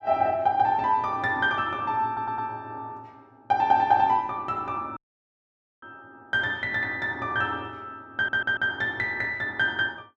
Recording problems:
audio stuttering; at 2 s and at 8 s
dropout; at 5 s for 1 s

